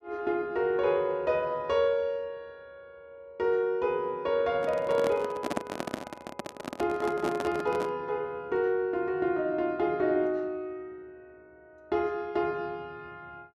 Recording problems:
microphone handling noise; from 4.5 to 8 s; peak +3 dB vs average level

